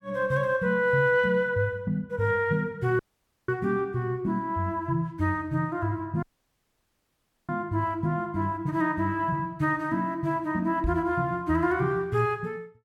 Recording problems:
audio cutting out; at 3 s and at 6 s for 1.5 s
microphone bump; at 11 s; peak 0 dB vs average level

